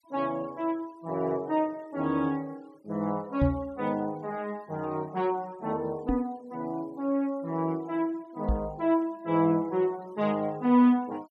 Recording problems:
noise reduction artefacts; signal-to-artefact ratio 28 dB
microphone bump; at 3.5 s, at 6 s and at 8.5 s; peak +6 dB vs average level

